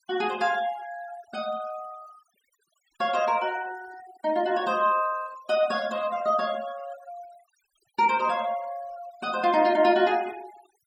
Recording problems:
denoising artefacts; signal-to-artefact ratio 20 dB

